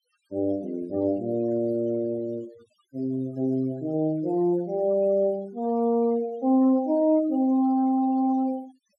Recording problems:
denoising artefacts; signal-to-artefact ratio 24 dB

